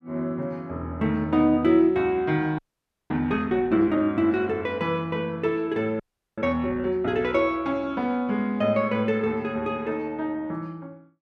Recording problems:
frozen audio; at 2.5 s for 0.5 s and at 6 s

